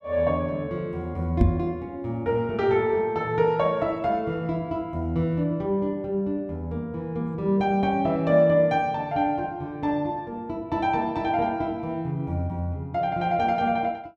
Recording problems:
knock on the microphone; at 1.5 s; peak +9 dB vs average level

